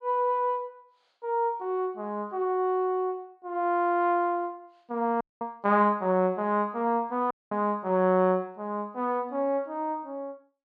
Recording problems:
dropout; at 5 s and at 7.5 s

